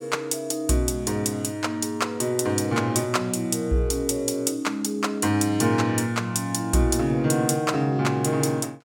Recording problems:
none

